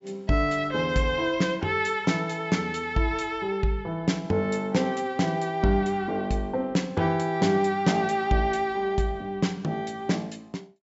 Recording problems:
treble cut off; nothing above 8 kHz

